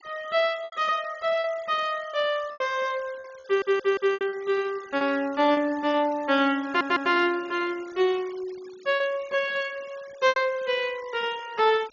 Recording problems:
low-pass filter; nothing above 6.9 kHz
denoising artefacts; signal-to-artefact ratio 22 dB
lost packets; 5% of the sound replaced, filled with repeated pitch periods
audio stuttering; at 3.5 s and at 6.5 s

